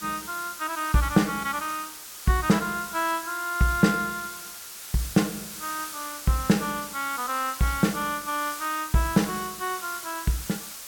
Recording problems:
background hiss; SNR 10 dB

